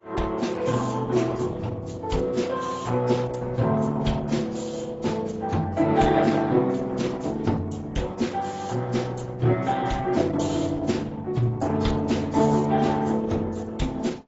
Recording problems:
lossy codec; Opus, then AAC, log-spectral distance 4 dB, nothing above 7.6 kHz

